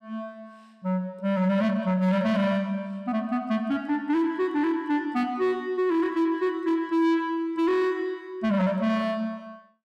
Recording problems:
distortion; soft clipping, signal-to-distortion ratio 10 dB

